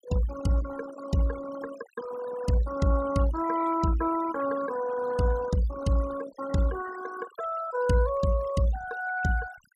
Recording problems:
denoising artefacts; signal-to-artefact ratio 14 dB

